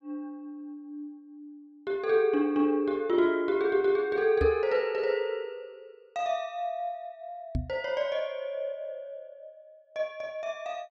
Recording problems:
microphone thump; at 4.5 s and at 7.5 s; peak +2 dB vs average level

